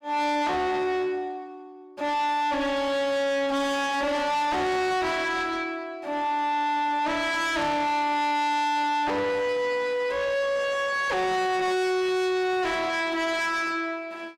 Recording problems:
distortion; soft clipping, signal-to-distortion ratio 7 dB

